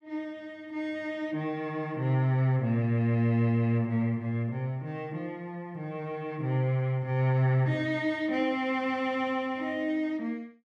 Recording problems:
none

